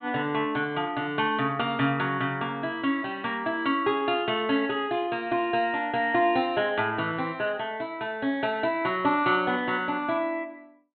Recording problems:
low-pass filter; nothing above 4 kHz

